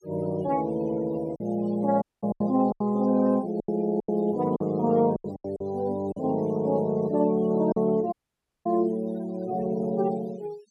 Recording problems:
denoising artefacts; signal-to-artefact ratio 23 dB
packet loss; 7% of the sound replaced, filled with silence
dropout; at 2 s and at 8 s for 0.5 s

